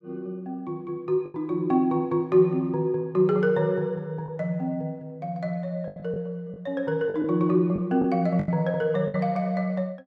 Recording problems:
lost packets; 5% of the sound replaced, filled with the last packet

